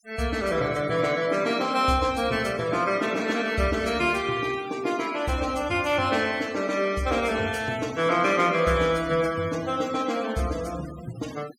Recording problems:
denoising artefacts; signal-to-artefact ratio 17 dB

